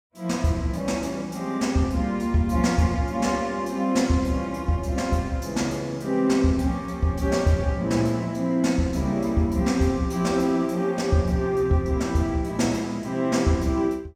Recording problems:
none

